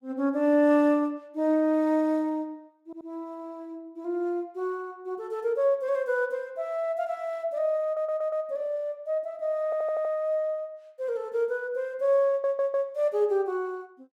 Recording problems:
stutter; 4 times, first at 3 s

